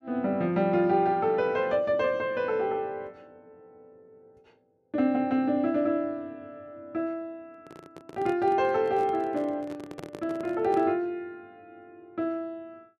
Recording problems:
microphone handling noise; from 7.5 to 11 s; peak -8 dB vs average level

